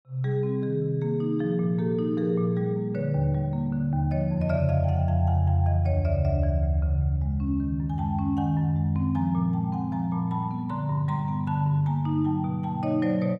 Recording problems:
none

